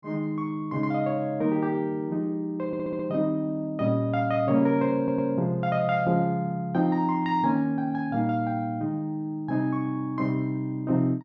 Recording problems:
audio stuttering; at 2.5 s and at 5 s

